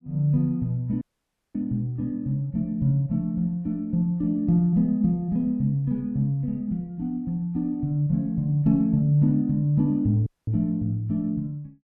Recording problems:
audio cutting out; at 1 s for 0.5 s and at 10 s

